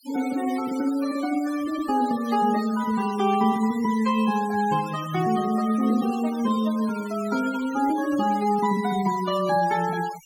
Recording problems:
noise reduction artefacts; signal-to-artefact ratio 16 dB

